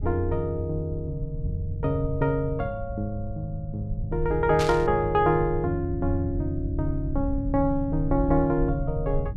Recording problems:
rumble; below 86 Hz, SNR 8 dB
static burst; at 4.5 s; peak -1 dB vs average level

